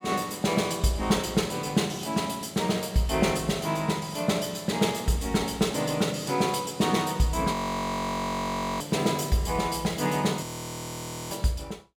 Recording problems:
audio freezing; at 7.5 s for 1.5 s and at 10 s for 1 s
crackling; from 9 to 11 s; loose cable, SNR 27 dB

